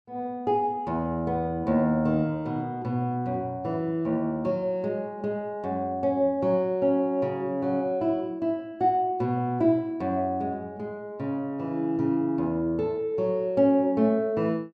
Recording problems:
none

